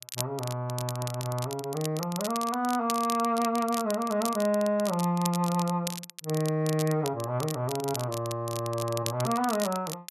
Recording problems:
crackle; vinyl, SNR 10 dB

